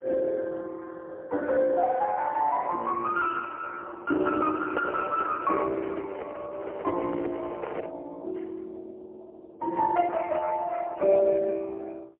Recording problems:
phone line; 240 Hz to 2.8 kHz, AMR-NB, then MP3
microphone handling noise; from 4 to 8 s; peak -3 dB vs average level

